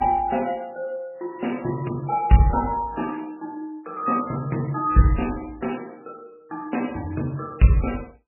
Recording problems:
lossy compression; MP3, log-spectral distance 4 dB, nothing above 2.8 kHz

